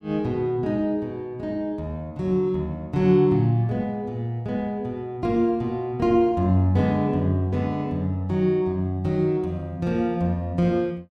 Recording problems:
none

